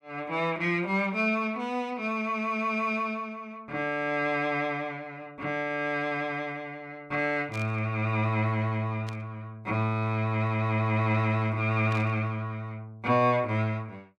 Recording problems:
burst of static; at 7.5 s, at 9 s and at 12 s; peak -10 dB vs average level

